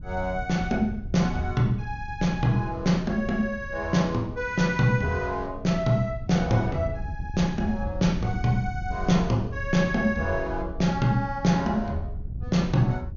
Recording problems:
treble cut off; nothing above 6.8 kHz
wind noise; below 98 Hz, SNR 11 dB

